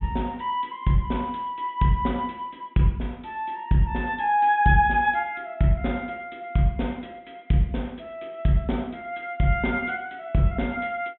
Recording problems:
treble missing; nothing above 3.6 kHz

